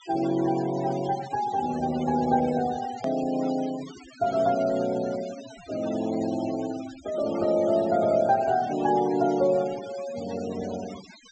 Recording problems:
treble cut off; nothing above 8 kHz
noise reduction artefacts; signal-to-artefact ratio 17 dB
hard cut with a click; at 3 s

